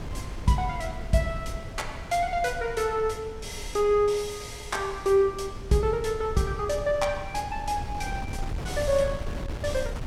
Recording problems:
wind on the microphone; below 160 Hz, SNR 11 dB

